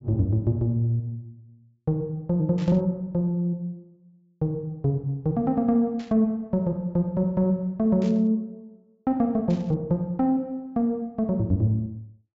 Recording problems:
low-pass filter; nothing above 8 kHz
static burst; 4 times, first at 2.5 s; peak -15 dB vs average level

